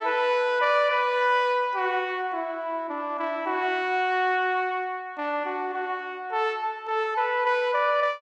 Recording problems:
none

